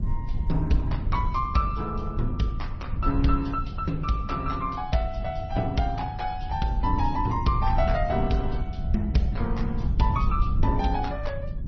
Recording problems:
lossy codec; MP3, then Opus, log-spectral distance 2 dB, nothing above 5.8 kHz
rumble; below 92 Hz, SNR 3 dB

